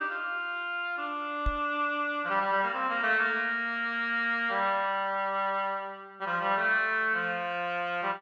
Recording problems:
microphone bump; at 1.5 s; peak 0 dB vs average level

